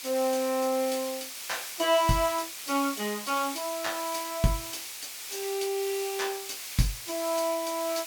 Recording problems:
background hiss; slope +3 dB per octave, SNR 7 dB

